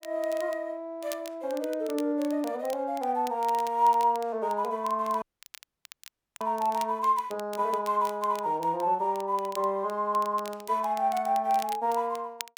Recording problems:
crackle; vinyl, SNR 19 dB
dropout; at 5 s for 1 s

